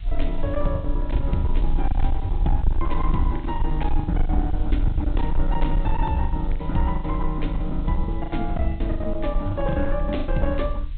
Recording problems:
treble missing; nothing above 4 kHz
distortion; hard clipping, uneven, signal-to-distortion ratio 10 dB
hiss; SNR 27 dB
low-frequency rumble; below 48 Hz, strongest tone 24 Hz, SNR 0 dB
lost packets; 13% of the sound replaced, filled with the last packet

